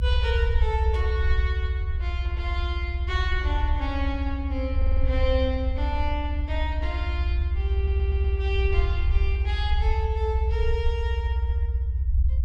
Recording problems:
rumble; below 76 Hz, strongest tone 60 Hz, SNR -6 dB
burst of static; at 1 s; peak -14 dB vs average level
audio stuttering; at 5 s and at 8 s

